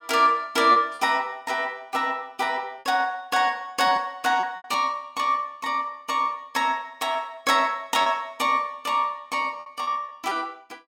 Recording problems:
lost packets; 5% of the sound replaced, filled with repeated pitch periods

